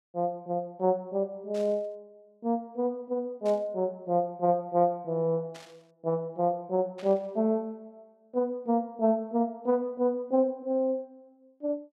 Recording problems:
burst of static; 4 times, first at 1.5 s; peak -14 dB vs average level

